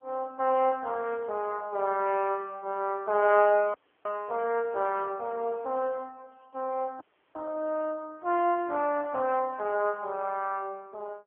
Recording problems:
telephone audio; 260 Hz to 3.5 kHz, AMR-NB
audio cutting out; at 3.5 s and at 7 s

